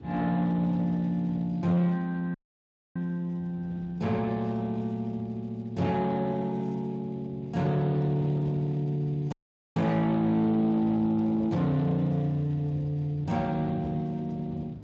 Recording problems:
lossy compression; Speex, log-spectral distance 2 dB
distortion; soft clipping, signal-to-distortion ratio 11 dB
wind noise; below 270 Hz, SNR 18 dB
audio cutting out; at 2.5 s for 0.5 s and at 9.5 s

